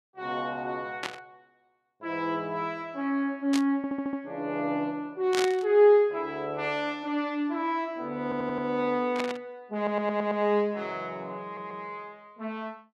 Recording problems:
burst of static; 4 times, first at 1 s; peak +1 dB vs average level
stutter; 4 times, first at 4 s

